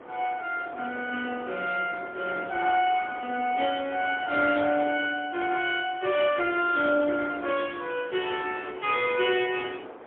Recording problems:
phone line; 260 Hz to 3.5 kHz, AMR-NB, then MP3
wind on the microphone; below 1 kHz, SNR 16 dB

